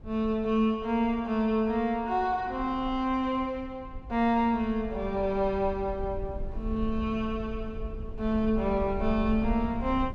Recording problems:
low-frequency rumble; below 72 Hz, SNR 13 dB

